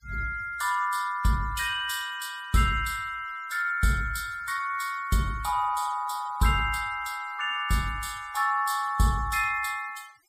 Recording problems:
denoising artefacts; signal-to-artefact ratio 21 dB

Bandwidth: 15.5 kHz